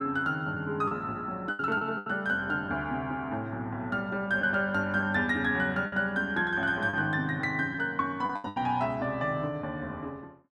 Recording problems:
lost packets; 5% of the sound replaced, filled with the last packet

